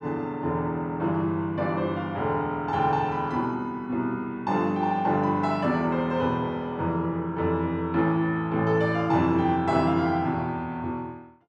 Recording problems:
none

